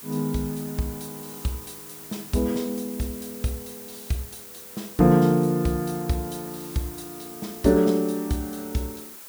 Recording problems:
hiss; slope -1 dB per octave, SNR 14 dB

